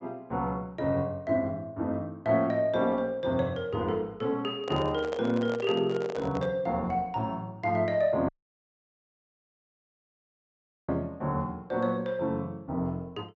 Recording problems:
treble cut off; nothing above 8 kHz
handling noise; from 4.5 to 6.5 s; peak -2 dB vs average level
audio cutting out; at 8.5 s for 2.5 s

